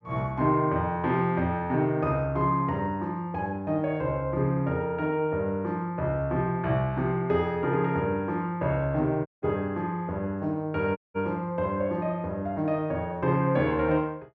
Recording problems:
audio cutting out; at 9.5 s and at 11 s

